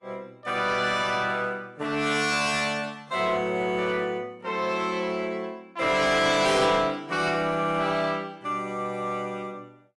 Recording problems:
codec artefacts; AAC, log-spectral distance 2 dB, nothing above 11 kHz
distortion; soft clipping, signal-to-distortion ratio 10 dB

